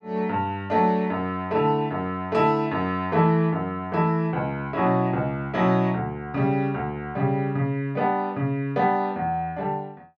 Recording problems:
none

